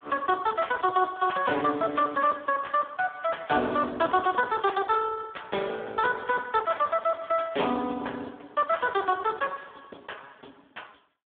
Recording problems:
telephone audio; 190 Hz to 3 kHz, Speex

